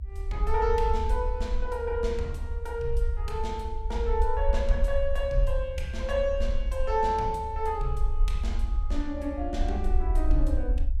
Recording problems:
rumble; below 56 Hz, SNR 0 dB

